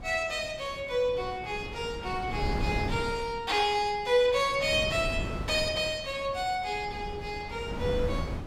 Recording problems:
wind on the microphone; below 320 Hz, SNR 8 dB

